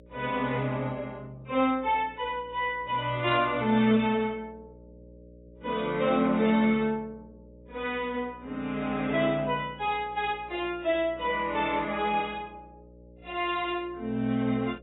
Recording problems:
lossy codec; AAC, log-spectral distance 2 dB, nothing above 3.8 kHz
hum; 60 Hz, harmonics up to 600 Hz, SNR 24 dB

